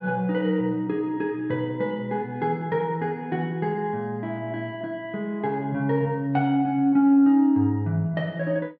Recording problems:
none

